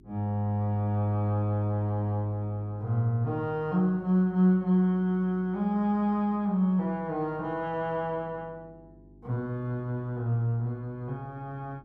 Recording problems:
hum; 50 Hz, harmonics up to 400 Hz, SNR 26 dB

